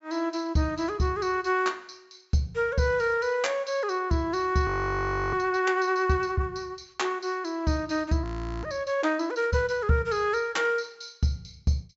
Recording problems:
low-pass filter; nothing above 8 kHz
frozen audio; at 4.5 s for 0.5 s and at 8 s

